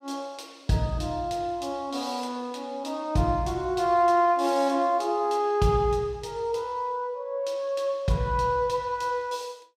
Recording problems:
none

